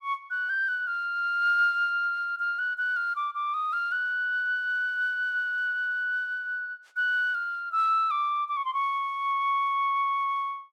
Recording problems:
none

